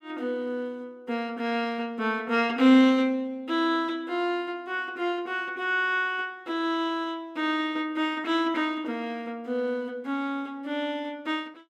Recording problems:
none

